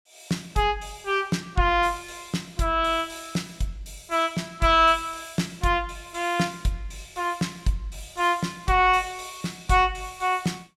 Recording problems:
none

